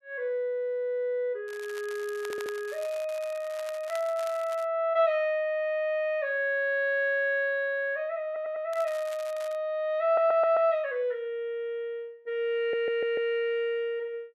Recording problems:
crackling; from 1.5 to 4.5 s and at 8.5 s; loose cable, SNR 19 dB
stutter; 4 times, first at 2 s

